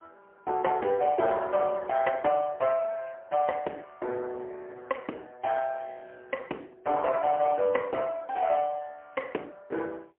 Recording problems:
phone line; 300 Hz to 3 kHz, AMR-NB, then MP3

